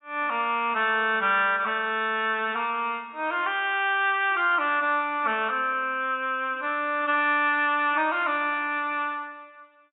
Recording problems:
lossy compression; AAC, log-spectral distance 2 dB, nothing above 3.2 kHz

